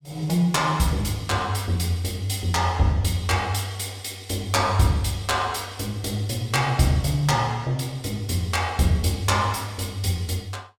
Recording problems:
none

